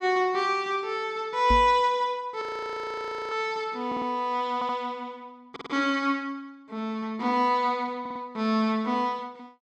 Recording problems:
microphone bump; at 1.5 s; peak +2 dB vs average level
audio freezing; at 2.5 s for 1 s
stutter; 4 times, first at 4 s

